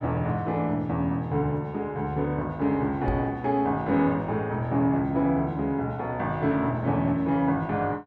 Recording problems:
microphone thump; at 3 s; peak 0 dB vs average level

